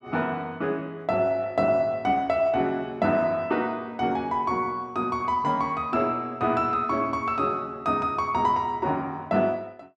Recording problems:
none

